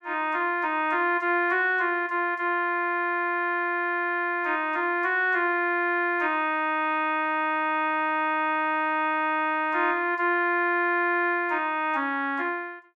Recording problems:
none

